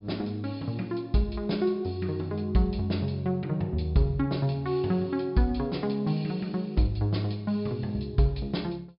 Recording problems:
treble cut off; nothing above 5.5 kHz

